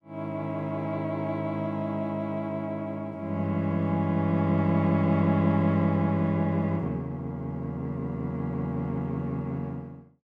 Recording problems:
none

